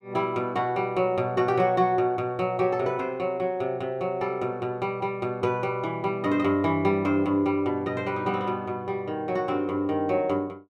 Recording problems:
none

